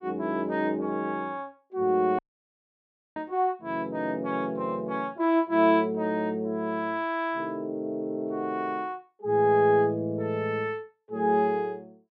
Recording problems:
audio cutting out; at 2 s for 1 s

